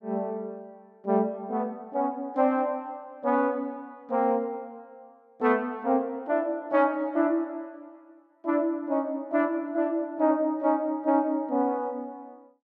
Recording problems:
none

